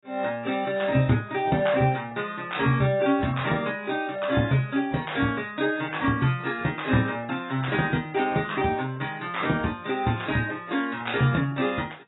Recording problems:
codec artefacts; AAC, log-spectral distance 4 dB, nothing above 3.8 kHz

